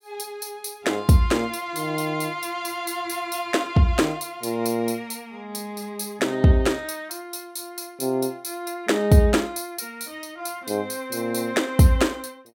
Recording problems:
none

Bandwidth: 17 kHz